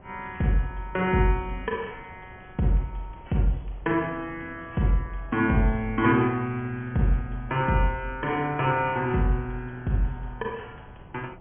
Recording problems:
treble cut off; nothing above 3.3 kHz
wind on the microphone; below 510 Hz, SNR 22 dB

